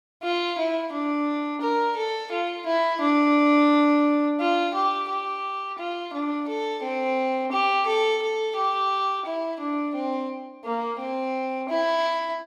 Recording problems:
none

